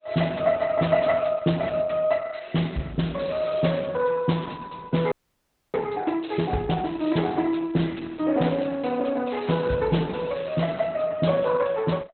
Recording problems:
codec artefacts; Opus, log-spectral distance 5 dB, nothing above 4.1 kHz
frozen audio; at 5 s for 0.5 s

